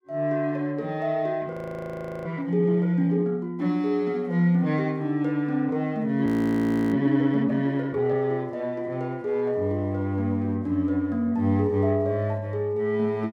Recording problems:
audio freezing; at 1.5 s for 0.5 s and at 6.5 s for 0.5 s

